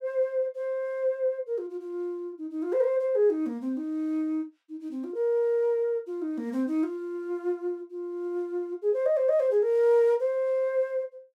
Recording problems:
none

